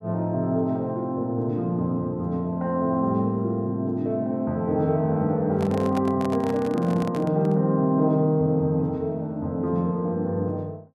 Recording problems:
microphone handling noise; from 5.5 to 7.5 s; peak -6 dB vs average level

